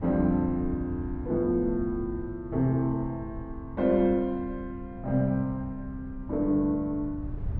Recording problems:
wind noise; below 110 Hz, SNR 13 dB

